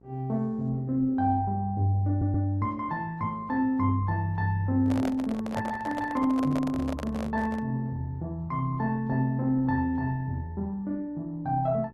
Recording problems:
lossy compression; Opus, log-spectral distance 2 dB
electrical hum; 60 Hz, harmonics up to 960 Hz, SNR 26 dB
stutter; at 2 s
microphone handling noise; from 5 to 7.5 s; peak -2 dB vs average level

